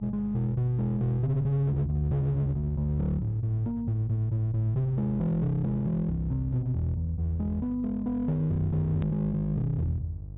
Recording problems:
low-pass filter; nothing above 4 kHz
distorted audio; hard clipping, uneven, signal-to-distortion ratio 9 dB
hum; 50 Hz, harmonics up to 450 Hz, SNR 15 dB
click at an edit; at 9 s

